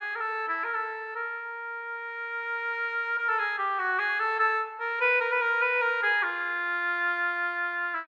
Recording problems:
none

